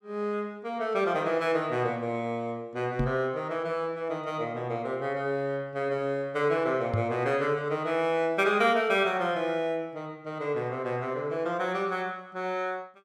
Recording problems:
knock on the microphone; at 3 s and at 7 s; peak +4 dB vs average level

